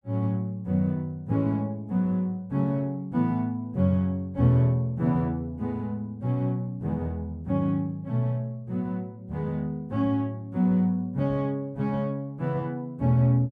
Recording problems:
none

